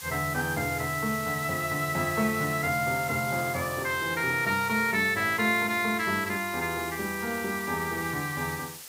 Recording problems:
hiss; slope +2 dB per octave, SNR 12 dB

